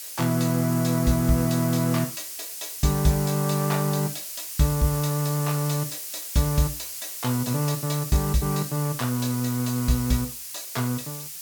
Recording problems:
hiss; slope +4 dB per octave, SNR 8 dB

